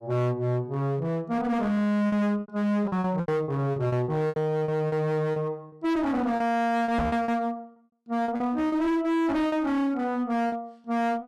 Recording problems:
distortion; hard clipping, uneven, signal-to-distortion ratio 8 dB
packet loss; 10% of the sound replaced, filled with repeated pitch periods
microphone thump; at 7 s; peak +2 dB vs average level

